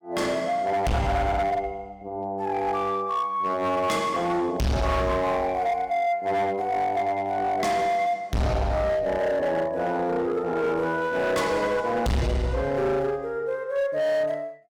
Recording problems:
distorted audio; hard clipping, signal-to-distortion ratio 6 dB

